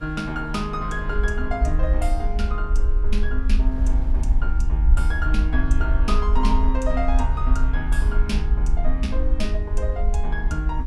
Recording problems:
hum; 60 Hz, harmonics up to 1.2 kHz, SNR 24 dB
low-frequency rumble; below 54 Hz, SNR -5 dB
wind on the microphone; below 620 Hz, SNR 20 dB

